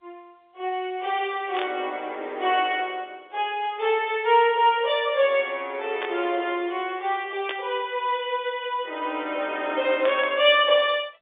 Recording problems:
telephone audio; 280 Hz to 3.6 kHz, G.711
static burst; 4 times, first at 1.5 s; peak -2 dB vs average level

